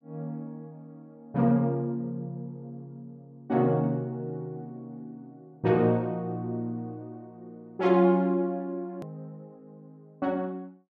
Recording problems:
hard cut with a click; at 9 s

